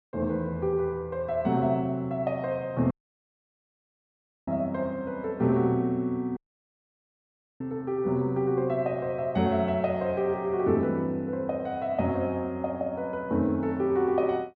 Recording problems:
dropout; at 3 s for 1.5 s and at 6.5 s for 1 s

